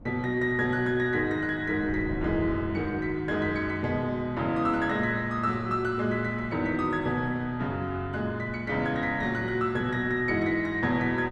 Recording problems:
wind on the microphone; below 270 Hz, SNR 17 dB

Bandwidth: 12.5 kHz